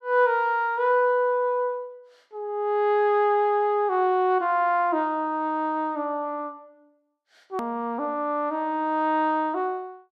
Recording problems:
hard cut with a click; at 7.5 s

